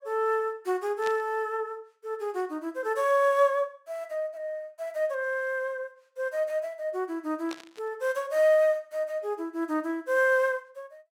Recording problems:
static burst; at 1 s and at 7.5 s; peak -7 dB vs average level

